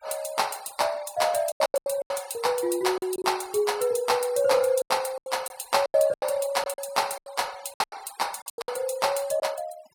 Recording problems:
denoising artefacts; signal-to-artefact ratio 20 dB
lost packets; 12% of the sound replaced, filled with silence

